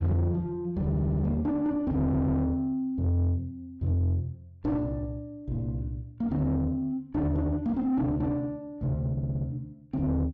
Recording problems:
distortion; soft clipping, signal-to-distortion ratio 10 dB
stutter; at 1 s, at 2 s and at 9 s

